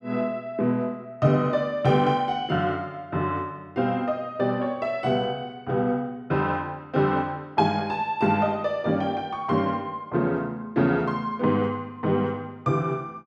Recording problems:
none

